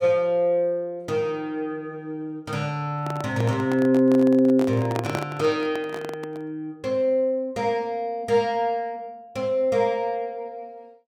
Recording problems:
handling noise; from 3 to 6.5 s; peak -1 dB vs average level

